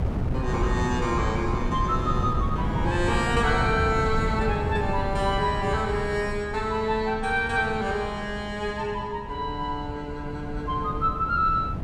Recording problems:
wind noise; below 200 Hz, SNR 4 dB

